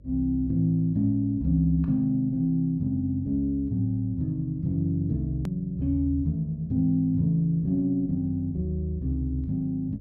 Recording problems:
hum; 50 Hz, harmonics up to 600 Hz, SNR 23 dB
hard cut with a click; at 5.5 s

